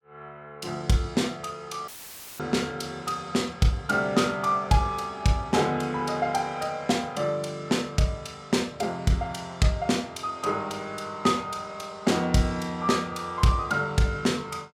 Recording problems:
dropout; at 2 s for 0.5 s; filled with static

